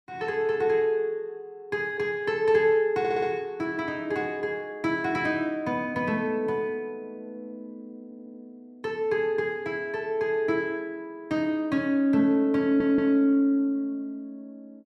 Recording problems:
stutter; at 3 s, at 8 s and at 13 s

